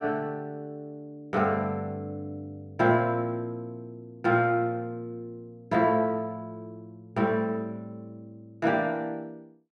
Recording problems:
none

